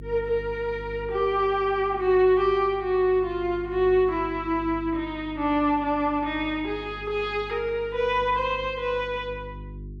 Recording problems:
hum; 50 Hz, harmonics up to 400 Hz, SNR 17 dB

